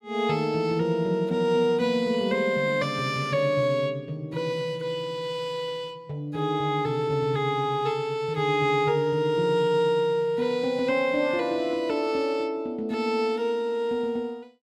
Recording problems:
none

